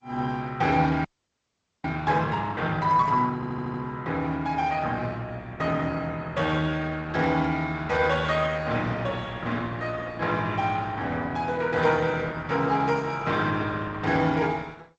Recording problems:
codec artefacts; Opus, then G.722, log-spectral distance 3 dB, nothing above 7.6 kHz
frozen audio; at 1 s for 1 s
stutter; at 3.5 s

